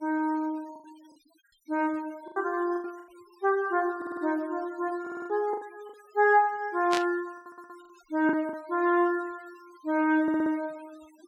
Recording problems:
denoising artefacts; signal-to-artefact ratio 26 dB
packet loss; 7% of the sound replaced, filled with the last packet
stutter; 4 times, first at 4 s
burst of static; at 7 s; peak +1 dB vs average level

